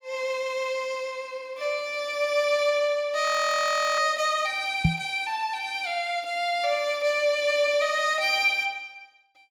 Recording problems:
audio freezing; at 3.5 s for 0.5 s
microphone thump; at 5 s; peak +7 dB vs average level

